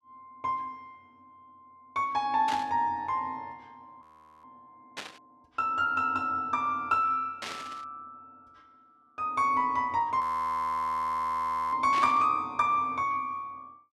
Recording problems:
burst of static; 4 times, first at 2.5 s; peak -4 dB vs average level
audio freezing; at 4 s and at 10 s for 1.5 s

